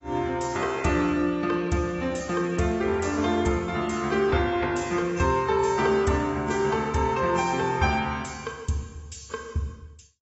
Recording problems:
codec artefacts; AAC, log-spectral distance 3 dB, nothing above 7.8 kHz

